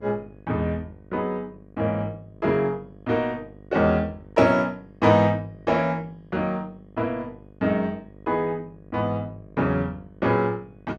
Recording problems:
hum; 50 Hz, harmonics up to 1.1 kHz, SNR 23 dB

